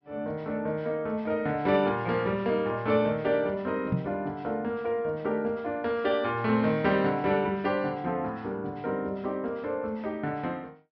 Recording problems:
low-pass filter; nothing above 5.5 kHz
microphone thump; at 4 s; peak +4 dB vs average level

